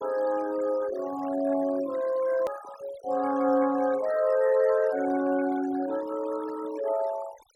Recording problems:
noise reduction artefacts; signal-to-artefact ratio 17 dB
hard cut with a click; at 2.5 s

